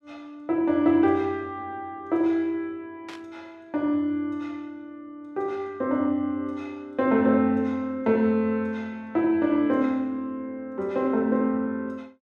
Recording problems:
burst of static; at 3 s; peak -12 dB vs average level

